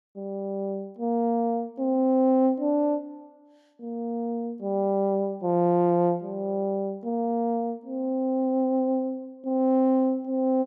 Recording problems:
none

